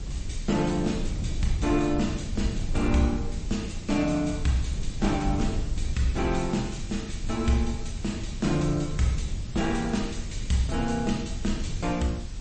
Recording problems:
lossy codec; MP3, log-spectral distance 5 dB, nothing above 8.2 kHz
hiss; slope +2 dB per octave, SNR 19 dB
rumble; below 92 Hz, SNR 6 dB

